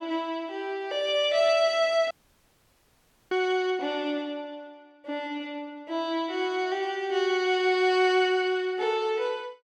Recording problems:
audio cutting out; at 2 s for 1 s

